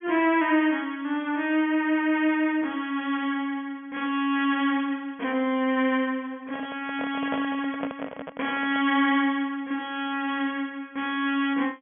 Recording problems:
treble cut off; nothing above 3.3 kHz
handling noise; from 6.5 to 9 s; peak -2 dB vs average level

